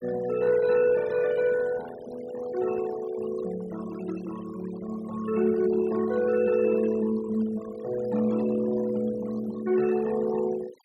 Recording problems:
noise reduction artefacts; signal-to-artefact ratio 18 dB

